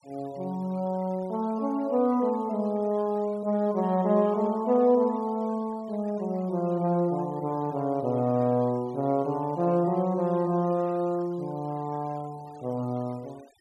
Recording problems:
denoising artefacts; signal-to-artefact ratio 27 dB

